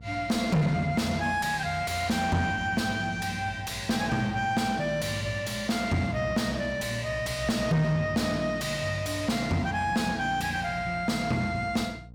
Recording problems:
distorted audio; soft clipping, signal-to-distortion ratio 7 dB
electrical hum; 60 Hz, harmonics up to 540 Hz, SNR 18 dB

